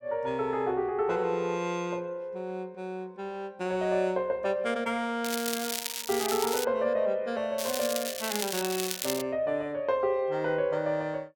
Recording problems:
crackling; from 5 to 6.5 s and from 7.5 to 9 s; loose cable, SNR 3 dB

